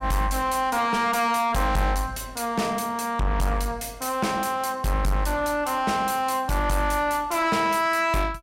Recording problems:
distorted audio; soft clipping, signal-to-distortion ratio 7 dB

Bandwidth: 16 kHz